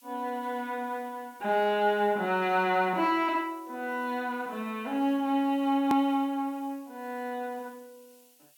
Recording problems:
background hiss; SNR 28 dB
click at an edit; at 6 s

